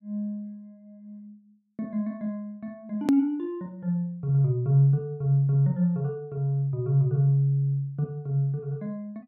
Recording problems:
hard cut with a click; at 3 s

